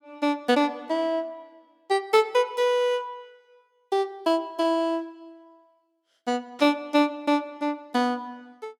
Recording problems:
burst of static; at 6.5 s; peak -13 dB vs average level

